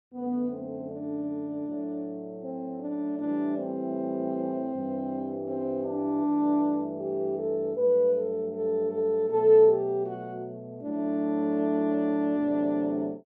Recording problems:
none

